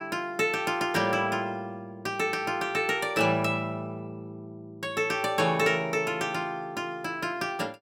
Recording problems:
none

